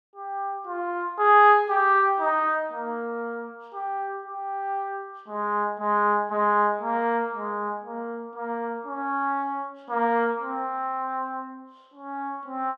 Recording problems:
none

